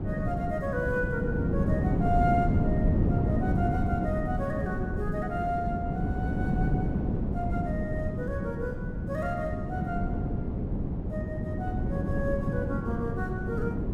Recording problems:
wind noise; below 250 Hz, SNR -4 dB

